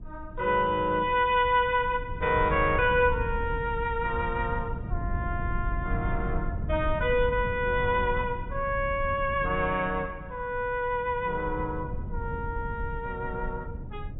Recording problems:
low-pass filter; nothing above 4 kHz
rumble; below 110 Hz, SNR 8 dB

